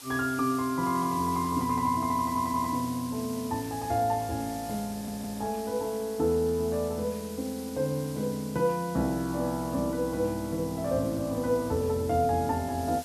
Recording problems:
hiss; slope 0 dB per octave, SNR 15 dB
stutter; at 2 s and at 5 s

